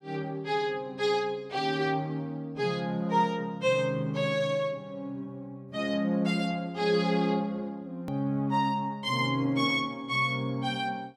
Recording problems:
hard cut with a click; at 8 s

